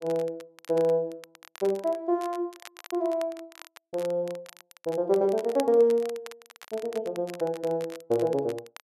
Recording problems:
crackle; vinyl, SNR 20 dB

